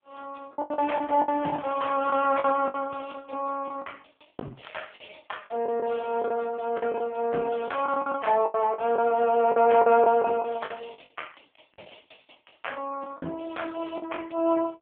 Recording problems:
telephone audio; 190 Hz to 3.3 kHz, AMR-NB
lost packets; 11% of the sound replaced, filled with the last packet
crackling; from 1 to 2.5 s and at 4.5 s; loose cable, SNR 21 dB

